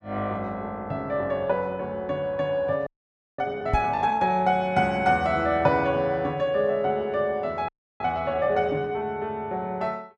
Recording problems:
audio freezing; at 3 s for 0.5 s and at 7.5 s
microphone bump; at 3.5 s; peak +3 dB vs average level

